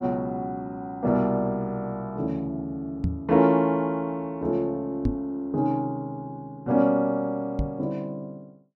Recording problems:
knock on the microphone; at 3 s, at 5 s and at 7.5 s; peak +4 dB vs average level

